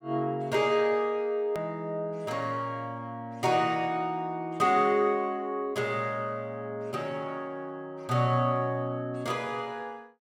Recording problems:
click at an edit; at 1.5 s

